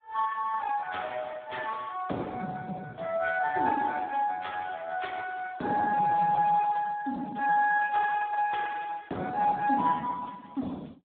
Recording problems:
telephone audio; 190 Hz to 3.6 kHz, Speex

